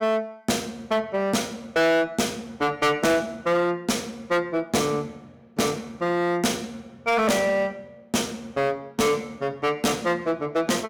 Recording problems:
distorted audio; hard clipping, uneven, signal-to-distortion ratio 8 dB

